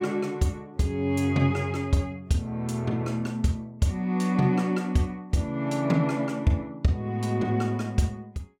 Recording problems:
none

